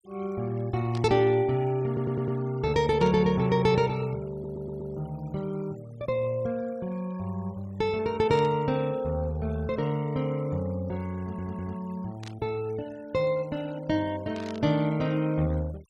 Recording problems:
denoising artefacts; signal-to-artefact ratio 23 dB
burst of static; 5 times, first at 1 s; peak -10 dB vs average level
stutter; at 2 s, at 4.5 s and at 11 s

